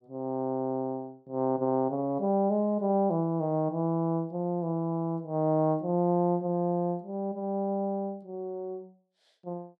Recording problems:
none

